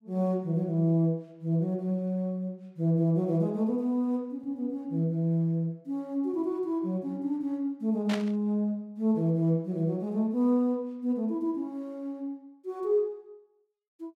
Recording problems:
static burst; at 8 s; peak -2 dB vs average level

